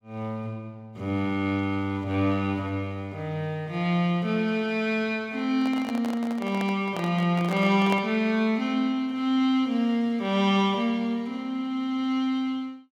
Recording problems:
handling noise; from 5.5 to 8 s; peak -2 dB vs average level

